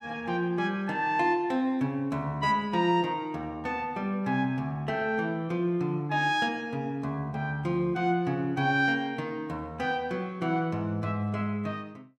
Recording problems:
none

